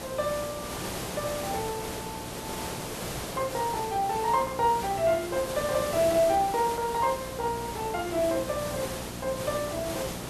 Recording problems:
electrical hum; 60 Hz, harmonics up to 1.3 kHz, SNR 16 dB
background hiss; slope -4 dB per octave, SNR 7 dB

